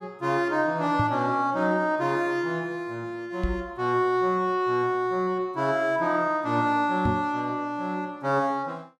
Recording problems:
knock on the microphone; at 1 s, at 3.5 s and at 7 s; peak +2 dB vs average level

